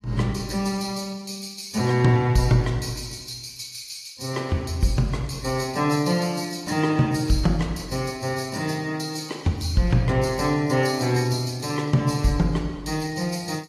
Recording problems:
codec artefacts; AAC, log-spectral distance 4 dB, nothing above 12.3 kHz

